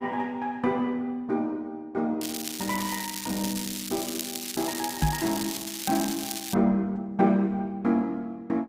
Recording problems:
lossy codec; Opus, log-spectral distance 5 dB
crackling; from 2 to 6.5 s; loose cable, SNR 5 dB
microphone thump; at 5 s; peak +7 dB vs average level

